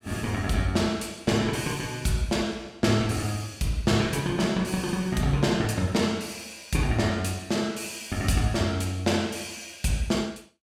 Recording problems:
none

